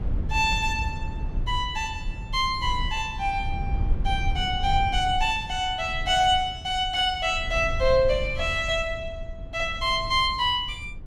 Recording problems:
low-frequency rumble; below 82 Hz, SNR 9 dB

